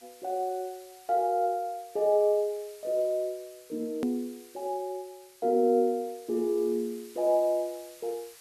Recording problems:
hiss; slope +2 dB per octave, SNR 23 dB
edit click; at 4 s

